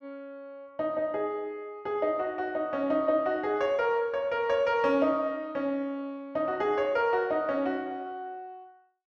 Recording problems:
none

